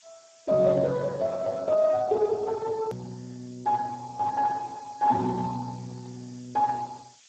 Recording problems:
lossy compression; Speex, log-spectral distance 8 dB
background hiss; slope +5 dB per octave, SNR 27 dB
hard cut with a click; at 3 s

